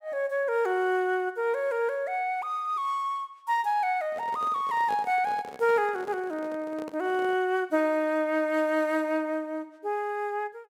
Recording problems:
handling noise; from 4 to 7.5 s; peak -8 dB vs average level

